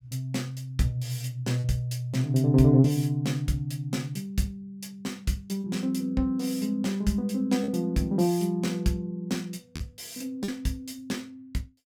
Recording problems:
packet loss; 2% of the sound replaced, filled with repeated pitch periods

